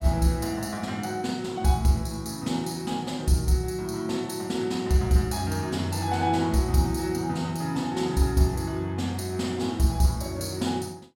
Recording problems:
none

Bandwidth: 16 kHz